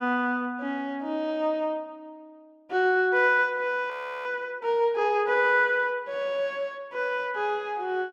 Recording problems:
frozen audio; at 4 s

